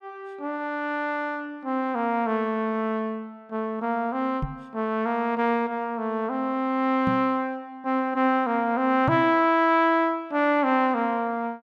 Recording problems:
microphone thump; at 4.5 s, at 7 s and at 9 s; peak +1 dB vs average level

